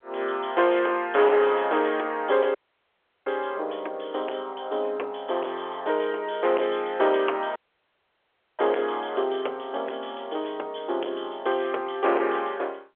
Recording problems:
phone line; 340 Hz to 3.3 kHz, G.711
distorted audio; hard clipping, uneven, signal-to-distortion ratio 12 dB
dropout; at 2.5 s for 0.5 s and at 7.5 s for 1 s

